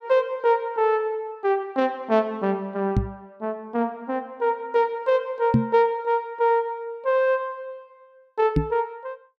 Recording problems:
microphone bump; at 3 s, at 5.5 s and at 8.5 s; peak +8 dB vs average level

